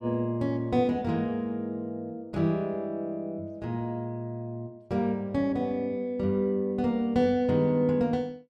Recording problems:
none

